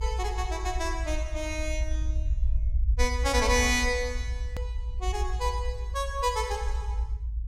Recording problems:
low-frequency rumble; below 64 Hz, strongest tone 54 Hz, SNR 2 dB
click at an edit; at 4.5 s

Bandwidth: 16 kHz